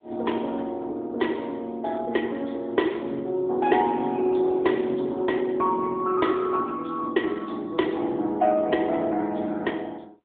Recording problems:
telephone audio; 190 Hz to 3.5 kHz, AMR-NB

